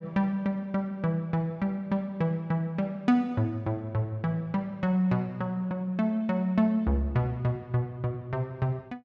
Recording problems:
none

